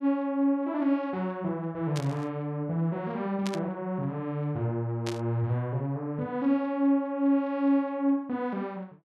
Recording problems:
burst of static; at 2 s, at 3.5 s and at 5 s; peak -4 dB vs average level

